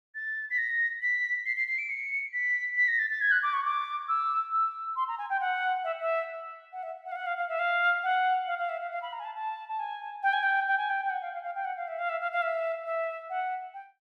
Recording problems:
none

